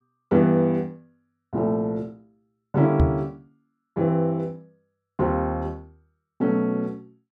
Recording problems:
knock on the microphone; at 3 s; peak +8 dB vs average level

